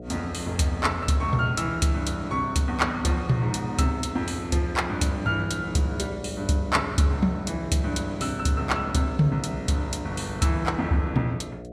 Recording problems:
electrical hum; 60 Hz, harmonics up to 720 Hz, SNR 13 dB

